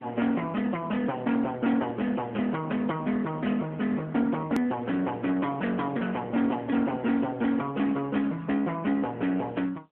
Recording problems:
telephone audio; 240 Hz to 2.6 kHz, AMR-NB
distortion; hard clipping, uneven, signal-to-distortion ratio 9 dB
click at an edit; at 4.5 s

